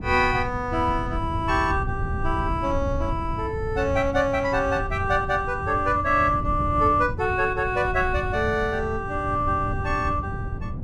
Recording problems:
rumble; below 120 Hz, SNR 8 dB

